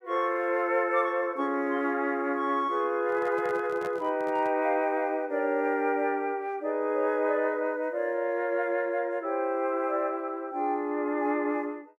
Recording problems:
microphone handling noise; from 3 to 4.5 s; peak -9 dB vs average level

